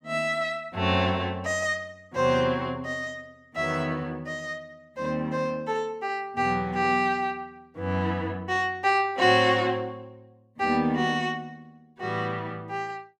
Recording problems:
none

